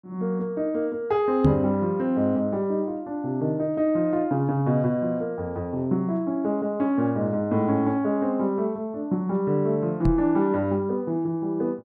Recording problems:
microphone bump; at 1.5 s and at 10 s; peak +7 dB vs average level

